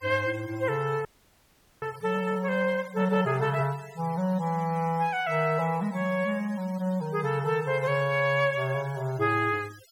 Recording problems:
denoising artefacts; signal-to-artefact ratio 22 dB
frozen audio; at 1 s for 1 s

